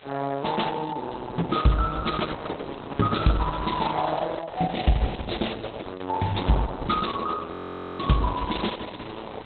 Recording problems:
codec artefacts; Opus, log-spectral distance 9 dB, nothing above 4.1 kHz
background hiss; SNR 17 dB
audio freezing; at 7.5 s

